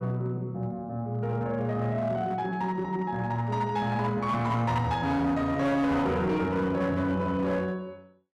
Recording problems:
distortion; hard clipping, uneven, signal-to-distortion ratio 10 dB

